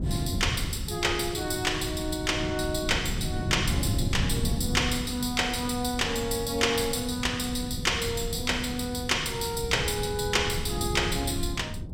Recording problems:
wind on the microphone; below 180 Hz, SNR 6 dB

